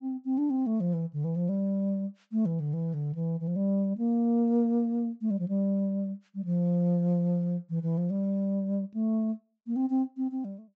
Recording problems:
treble cut off; nothing above 8 kHz

